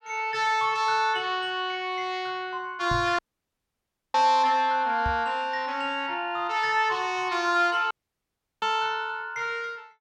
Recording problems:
knock on the microphone; at 3 s, at 5 s and at 8.5 s; peak -3 dB vs average level
dropout; at 3 s for 1 s and at 8 s for 0.5 s

